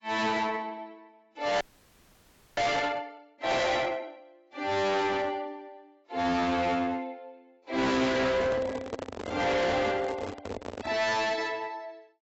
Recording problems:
codec artefacts; AAC, log-spectral distance 3 dB, nothing above 7.6 kHz
distorted audio; hard clipping, uneven, signal-to-distortion ratio 6 dB
frozen audio; at 1.5 s for 1 s
microphone handling noise; from 8 to 11 s; peak -1 dB vs average level

